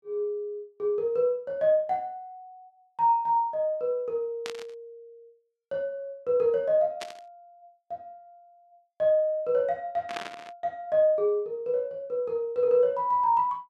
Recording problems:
burst of static; at 4.5 s, at 7 s and at 10 s; peak -5 dB vs average level

